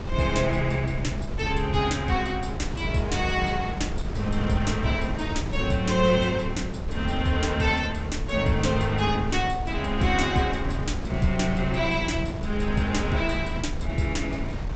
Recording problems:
treble cut off; nothing above 8 kHz
wind on the microphone; below 150 Hz, SNR 6 dB

